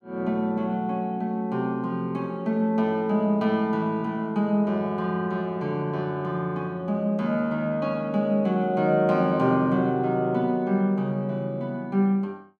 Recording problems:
none

